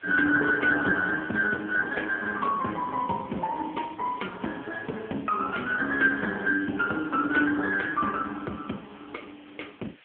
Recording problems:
telephone audio; 220 Hz to 2.8 kHz, AMR-NB
background hiss; SNR 27 dB

